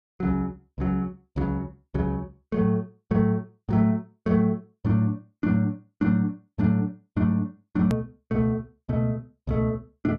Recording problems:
click at an edit; at 8 s

